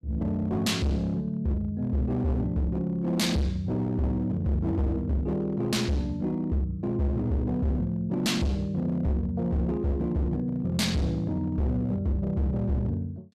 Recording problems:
distortion; hard clipping, signal-to-distortion ratio 6 dB

